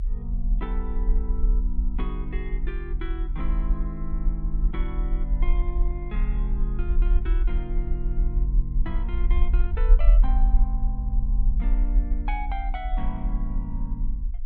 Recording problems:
rumble; below 44 Hz, strongest tone 36 Hz, SNR -9 dB

